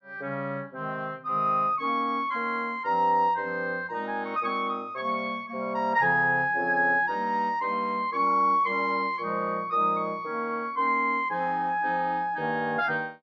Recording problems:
low-pass filter; nothing above 8 kHz

